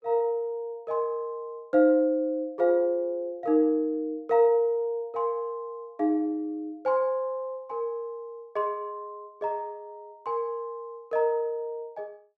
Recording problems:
none

